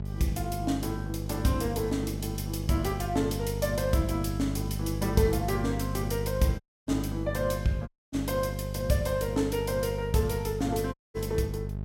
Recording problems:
hum; 50 Hz, harmonics up to 650 Hz, SNR 4 dB
dropout; at 6.5 s, at 8 s and at 11 s

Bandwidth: 16 kHz